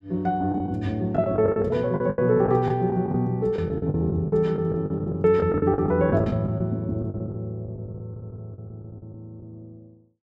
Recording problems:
lost packets; 16% of the sound replaced, filled with the last packet

